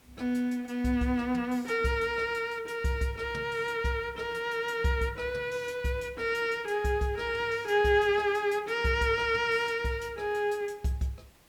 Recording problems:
background hiss; slope -3 dB per octave, SNR 30 dB

